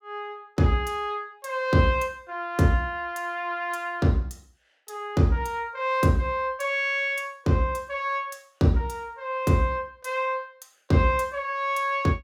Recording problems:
none

